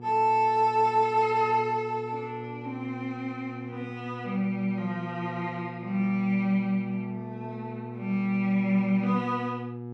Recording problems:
hum; 60 Hz, harmonics up to 960 Hz, SNR 12 dB

